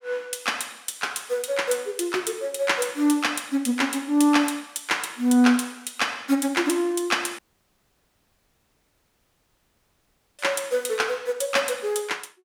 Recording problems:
dropout; at 7.5 s for 3 s

